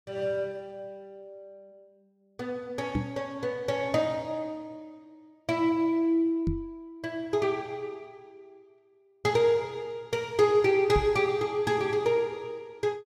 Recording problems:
microphone thump; at 3 s, at 6.5 s and at 11 s; peak +3 dB vs average level

